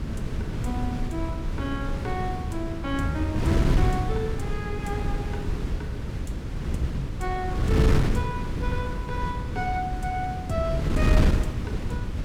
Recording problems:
wind on the microphone; below 190 Hz, SNR -4 dB

